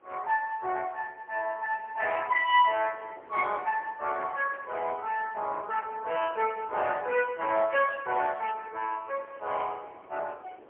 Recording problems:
telephone audio; 340 Hz to 3.3 kHz, AMR-NB, then MP3
wind noise; below 800 Hz, SNR 23 dB

